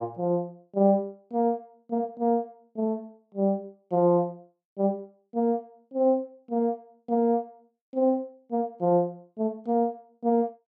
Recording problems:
none

